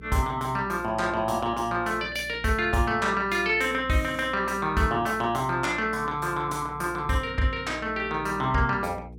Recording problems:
mains hum; 60 Hz, harmonics up to 480 Hz, SNR 19 dB

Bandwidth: 16.5 kHz